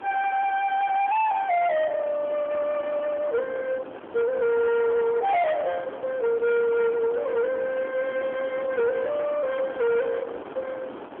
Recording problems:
phone line; 900 Hz to 2.3 kHz, AMR-NB
distorted audio; soft clipping, signal-to-distortion ratio 7 dB
wind noise; below 1.2 kHz, SNR 14 dB

